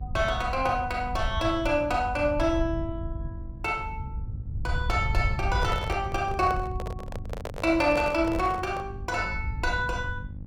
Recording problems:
electrical hum; 50 Hz, harmonics up to 600 Hz, SNR 17 dB
rumble; below 98 Hz, SNR 7 dB
microphone handling noise; from 5.5 to 9 s; peak -3 dB vs average level

